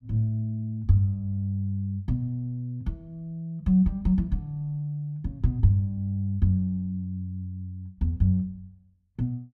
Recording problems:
none

